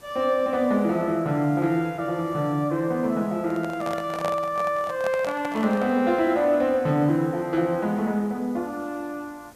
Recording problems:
background hiss; SNR 27 dB
handling noise; from 3.5 to 6 s; peak -2 dB vs average level

